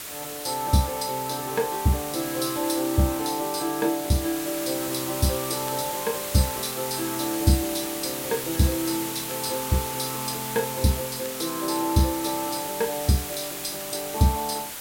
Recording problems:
background hiss; slope 0 dB per octave, SNR 5 dB
crackling; vinyl, SNR 28 dB

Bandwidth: 16.5 kHz